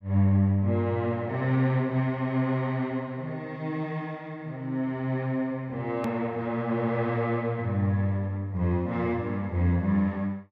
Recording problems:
edit click; at 6 s

